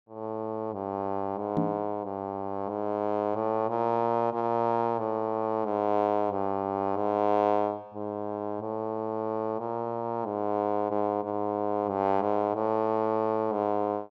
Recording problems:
knock on the microphone; at 1.5 s; peak +4 dB vs average level

